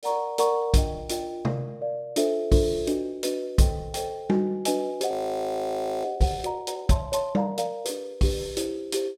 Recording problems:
audio freezing; at 5 s for 1 s

